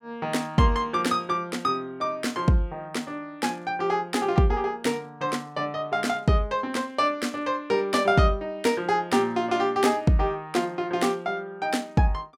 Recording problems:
none

